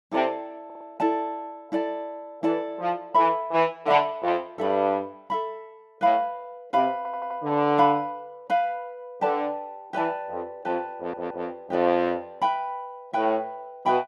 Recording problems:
stutter; at 0.5 s, at 7 s and at 11 s

